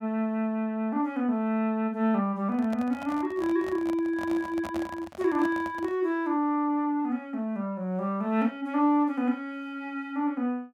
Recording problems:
handling noise; from 2.5 to 6 s; peak -6 dB vs average level

